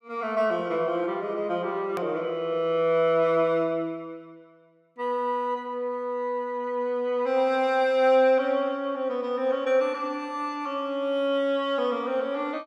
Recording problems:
click at an edit; at 2 s

